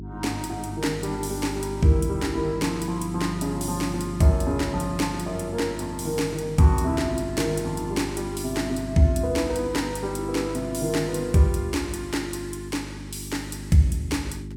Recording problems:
electrical hum; 50 Hz, harmonics up to 400 Hz, SNR 11 dB

